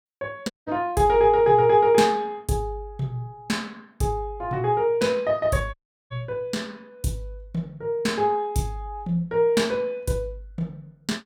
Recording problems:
dropout; at 0.5 s and at 5.5 s

